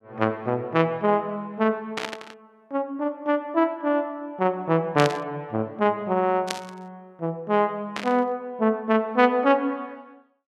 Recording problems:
burst of static; 4 times, first at 2 s; peak 0 dB vs average level

